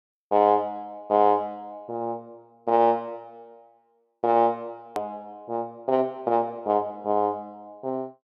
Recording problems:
edit click; at 5 s

